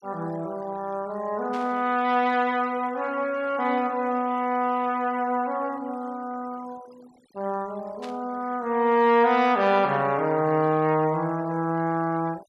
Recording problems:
noise reduction artefacts; signal-to-artefact ratio 24 dB
burst of static; at 1.5 s and at 8 s; peak -13 dB vs average level

